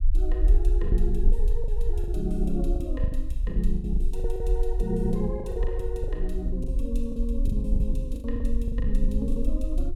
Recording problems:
rumble; below 46 Hz, SNR -3 dB
packet loss; 12% of the sound replaced, filled with the last packet

